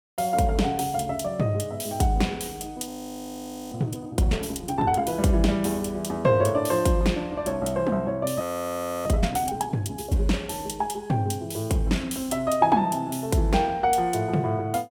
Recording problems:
audio freezing; at 3 s for 1 s and at 8.5 s for 0.5 s

